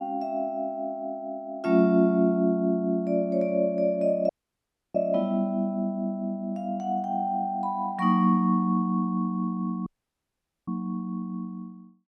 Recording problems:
dropout; at 4.5 s for 0.5 s and at 10 s for 1 s

